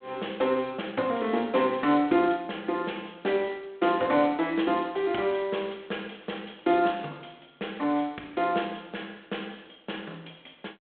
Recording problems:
phone line; 220 Hz to 3.6 kHz, G.726

